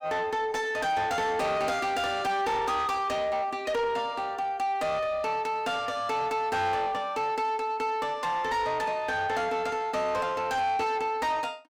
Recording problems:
distorted audio; soft clipping, signal-to-distortion ratio 8 dB

